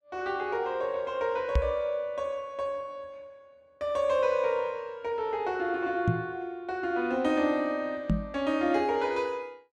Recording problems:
microphone bump; at 1.5 s, at 6 s and at 8 s; peak +7 dB vs average level

